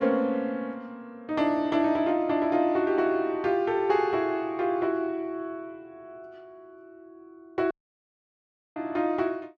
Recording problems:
dropout; at 7.5 s for 1 s

